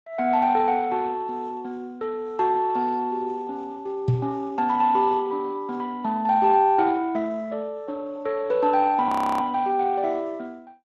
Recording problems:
lossy codec; Speex, log-spectral distance 2 dB, nothing above 13.1 kHz
knock on the microphone; at 4 s; peak +5 dB vs average level
audio freezing; at 9 s

